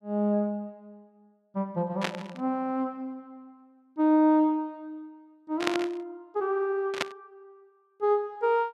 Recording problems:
static burst; at 2 s, at 5.5 s and at 7 s; peak +4 dB vs average level

